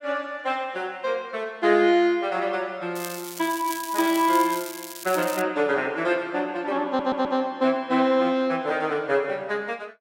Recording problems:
crackling; from 3 to 5.5 s; loose cable, SNR 11 dB
audio stuttering; at 7 s

